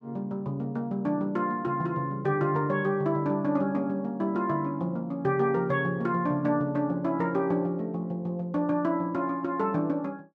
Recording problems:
none

